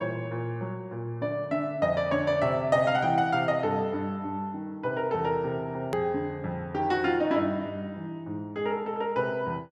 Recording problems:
edit click; at 6 s

